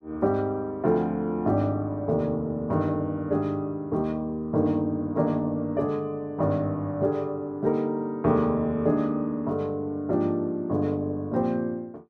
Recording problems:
none

